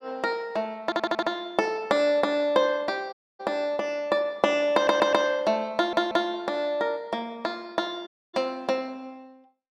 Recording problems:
stutter; at 1 s, at 5 s and at 6 s
dropout; at 3 s and at 8 s

